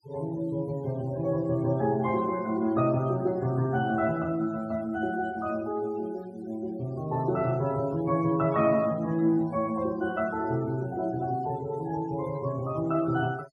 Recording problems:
noise reduction artefacts; signal-to-artefact ratio 23 dB

